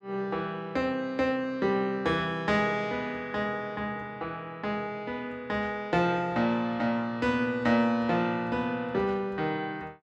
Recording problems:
none

